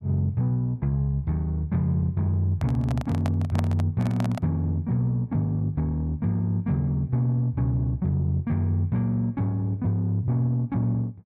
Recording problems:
microphone handling noise; from 2.5 to 4.5 s; peak -2 dB vs average level

